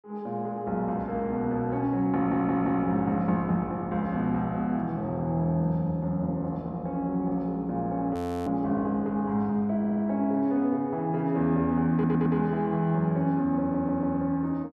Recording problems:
stutter; 4 times, first at 2 s
frozen audio; at 8 s

